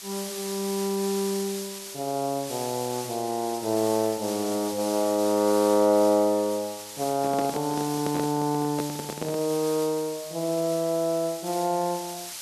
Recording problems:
background hiss; slope +3 dB per octave, SNR 10 dB
microphone handling noise; from 7 to 9.5 s; peak -2 dB vs average level

